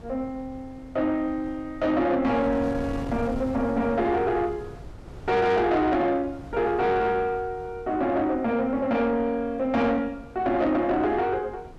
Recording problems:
distorted audio; soft clipping, signal-to-distortion ratio 10 dB
wind on the microphone; below 350 Hz, SNR 16 dB

